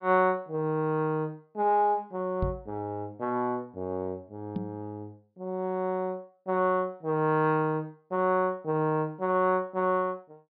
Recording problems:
treble missing; nothing above 5.5 kHz
microphone thump; at 2.5 s and at 4.5 s; peak +2 dB vs average level

